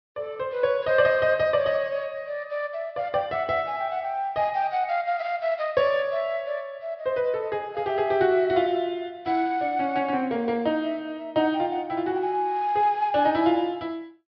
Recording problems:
treble cut off; nothing above 5.5 kHz

